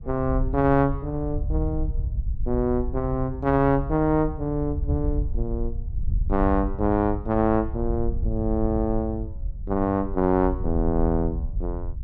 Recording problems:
wind on the microphone; below 72 Hz, SNR 6 dB

